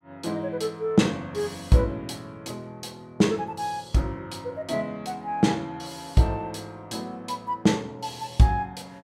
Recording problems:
none

